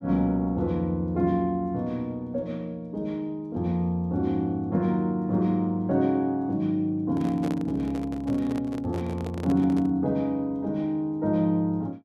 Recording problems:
handling noise; from 7 to 10 s; peak -5 dB vs average level

